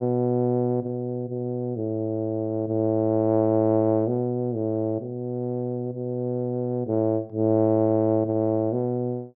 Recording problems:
none

